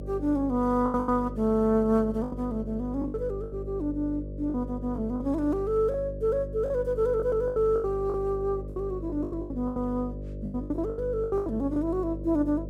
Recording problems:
electrical hum; 50 Hz, harmonics up to 600 Hz, SNR 10 dB
packet loss; 13% of the sound replaced, filled with the last packet

